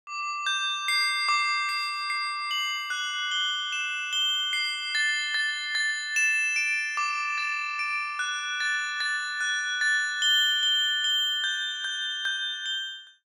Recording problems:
none

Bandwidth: 18 kHz